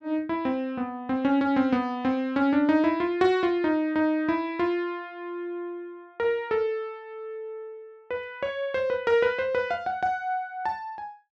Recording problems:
none

